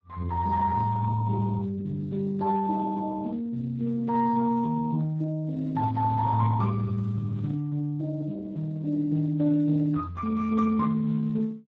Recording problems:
lossy compression; Speex, log-spectral distance 2 dB

